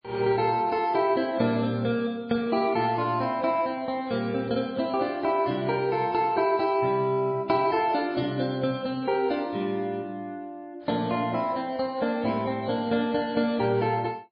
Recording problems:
lossy codec; MP3, log-spectral distance 2 dB, nothing above 4.6 kHz

